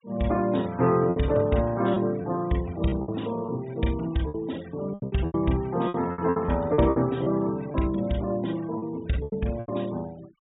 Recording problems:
treble missing; nothing above 4 kHz
noise reduction artefacts; signal-to-artefact ratio 24 dB
lost packets; 10% of the sound replaced, filled with repeated pitch periods

